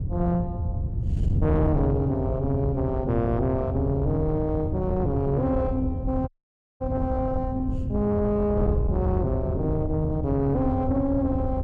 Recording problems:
distortion; soft clipping, signal-to-distortion ratio 12 dB
wind on the microphone; below 130 Hz, SNR 3 dB
dropout; at 6.5 s for 0.5 s

